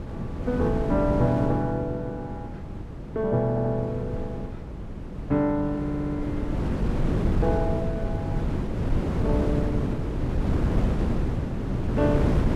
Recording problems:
wind on the microphone; below 280 Hz, SNR 1 dB
audio stuttering; at 3.5 s and at 6 s

